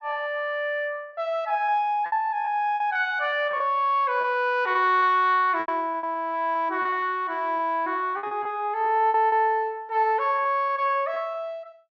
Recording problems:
treble missing; nothing above 8 kHz
packet loss; 9% of the sound replaced, filled with repeated pitch periods

